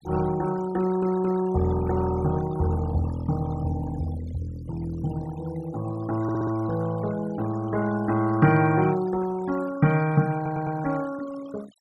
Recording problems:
noise reduction artefacts; signal-to-artefact ratio 17 dB
audio stuttering; at 1 s, at 6 s and at 10 s

